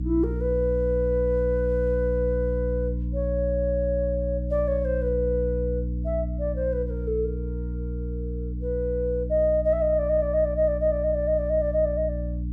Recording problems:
electrical hum; 60 Hz, harmonics up to 300 Hz, SNR 5 dB

